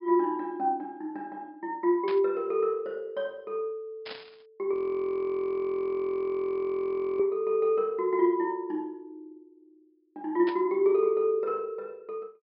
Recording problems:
treble cut off; nothing above 5.5 kHz
burst of static; at 2 s, at 4 s and at 10 s; peak -7 dB vs average level
audio freezing; at 4.5 s for 2.5 s

